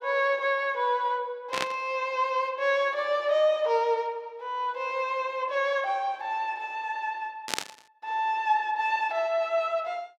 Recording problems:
burst of static; at 1.5 s and at 7.5 s; peak +4 dB vs average level

